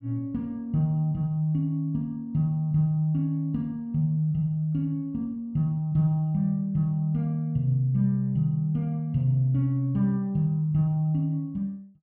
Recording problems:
none

